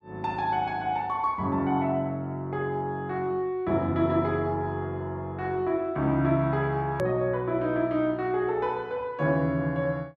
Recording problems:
click at an edit; at 7 s

